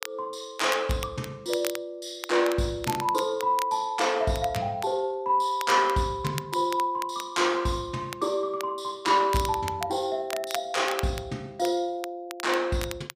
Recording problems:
crackling; vinyl, SNR 13 dB

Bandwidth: 15 kHz